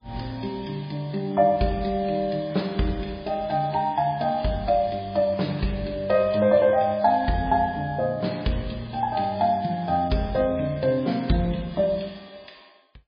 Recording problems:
codec artefacts; MP3, log-spectral distance 5 dB, nothing above 5 kHz

